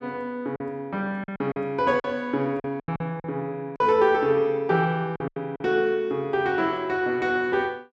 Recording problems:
packet loss; 8% of the sound replaced, filled with silence

